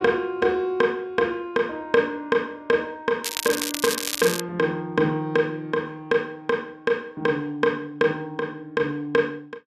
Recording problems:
crackling; from 3 to 4.5 s; loose cable, SNR 3 dB

